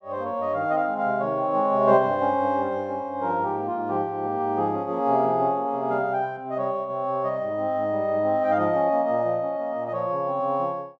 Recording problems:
none

